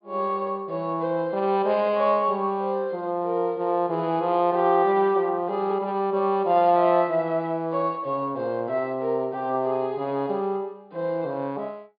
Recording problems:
low-pass filter; nothing above 4.8 kHz

